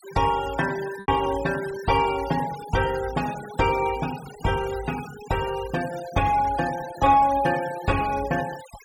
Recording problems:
noise reduction artefacts; signal-to-artefact ratio 15 dB
lost packets; 0.9% of the sound replaced, filled with repeated pitch periods

